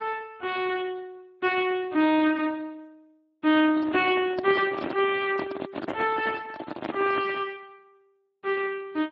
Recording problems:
lossy compression; MP3, then Speex, log-spectral distance 4 dB
handling noise; from 3.5 to 7.5 s; peak -1 dB vs average level

